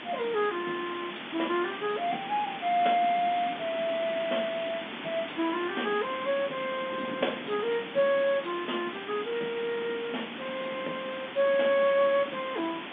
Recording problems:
phone line; 220 Hz to 3.6 kHz, G.711
hiss; SNR 9 dB
wind noise; below 410 Hz, SNR 15 dB

